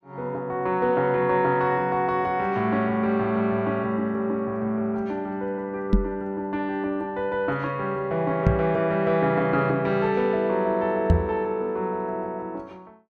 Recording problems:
microphone bump; at 6 s, at 8.5 s and at 11 s; peak +9 dB vs average level

